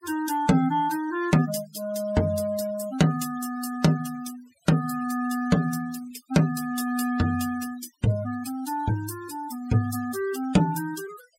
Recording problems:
noise reduction artefacts; signal-to-artefact ratio 18 dB

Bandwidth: 16 kHz